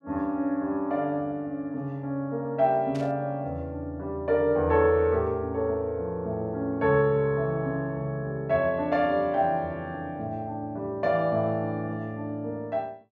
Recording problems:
static burst; at 3 s; peak -13 dB vs average level

